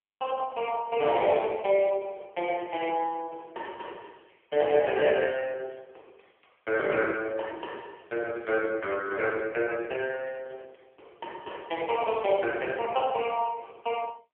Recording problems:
phone line; 300 Hz to 3.3 kHz, AMR-NB

